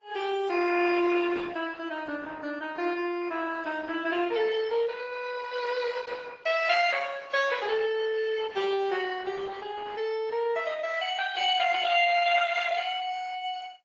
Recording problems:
codec artefacts; Opus, then AAC, log-spectral distance 5 dB, nothing above 6.7 kHz

